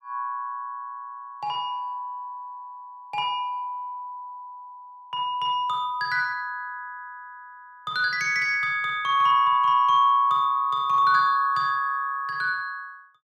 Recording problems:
none

